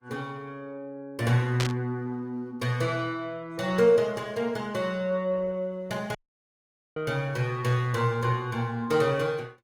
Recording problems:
lossy codec; Opus, log-spectral distance 2 dB, nothing above 19 kHz
static burst; at 1.5 s; peak +1 dB vs average level
audio cutting out; at 6 s for 1 s

